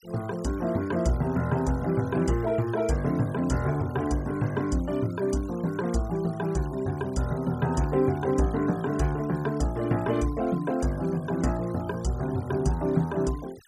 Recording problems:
noise reduction artefacts; signal-to-artefact ratio 22 dB

